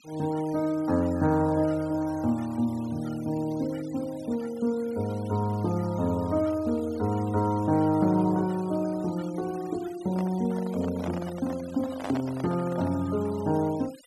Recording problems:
denoising artefacts; signal-to-artefact ratio 21 dB
handling noise; from 10 to 13 s; peak -4 dB vs average level

